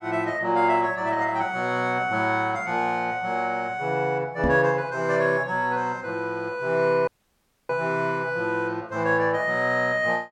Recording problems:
knock on the microphone; at 4.5 s; peak +1 dB vs average level
audio cutting out; at 7 s for 0.5 s

